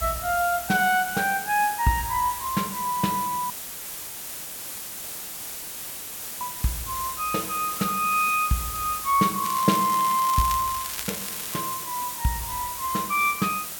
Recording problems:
hiss; slope 0 dB per octave, SNR 7 dB
audio cutting out; at 3.5 s for 3 s
crackling; from 9.5 to 12 s; loose cable, SNR 10 dB

